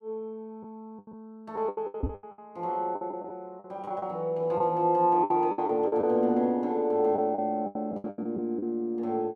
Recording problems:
packet loss; 13% of the sound replaced, filled with the last packet
microphone thump; at 2 s; peak +1 dB vs average level

